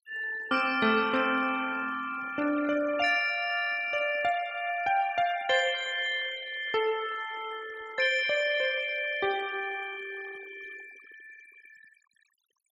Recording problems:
denoising artefacts; signal-to-artefact ratio 16 dB

